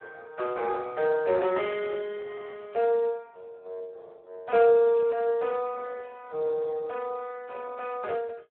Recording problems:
telephone audio; 320 Hz to 2.8 kHz, Speex

